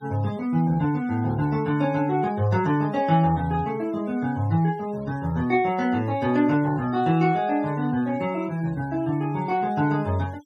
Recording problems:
denoising artefacts; signal-to-artefact ratio 26 dB

